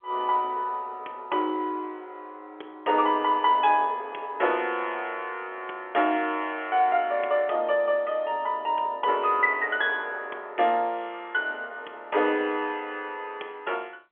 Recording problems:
telephone audio; 280 Hz to 3.5 kHz, G.711

